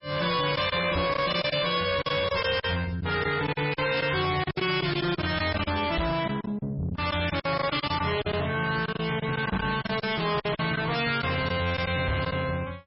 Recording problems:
codec artefacts; MP3, log-spectral distance 7 dB, nothing above 5.3 kHz
distortion; soft clipping, signal-to-distortion ratio 7 dB
packet loss; 10% of the sound replaced, filled with silence
knock on the microphone; 4 times, first at 1 s; peak +3 dB vs average level

